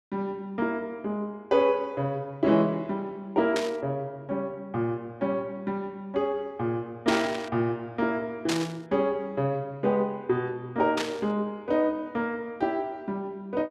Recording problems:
burst of static; 4 times, first at 3.5 s; peak +2 dB vs average level

